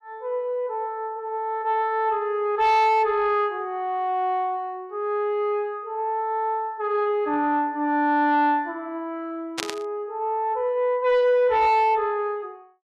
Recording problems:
distorted audio; soft clipping, signal-to-distortion ratio 10 dB
burst of static; at 9.5 s; peak +1 dB vs average level

